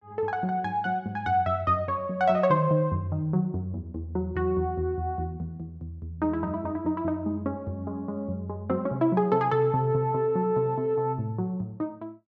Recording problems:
none

